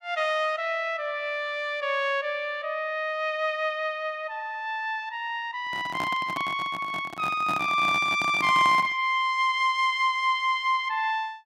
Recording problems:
handling noise; from 5.5 to 9 s; peak -4 dB vs average level

